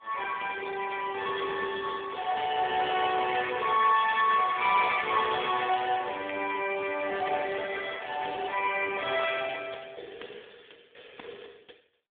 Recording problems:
phone line; 300 Hz to 3.5 kHz, AMR-NB

